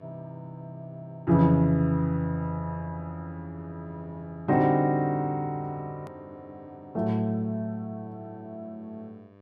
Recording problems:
mains hum; 50 Hz, harmonics up to 1.8 kHz, SNR 28 dB
hard cut with a click; at 6 s

